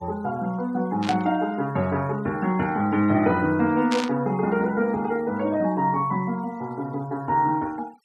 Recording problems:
denoising artefacts; signal-to-artefact ratio 25 dB
burst of static; at 1 s and at 4 s; peak -1 dB vs average level

